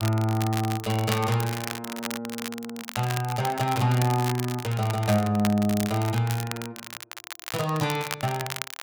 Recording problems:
crackle; vinyl, SNR 9 dB

